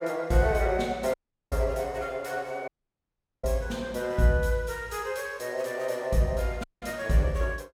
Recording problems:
dropout; at 1 s, at 2.5 s for 1 s and at 6.5 s

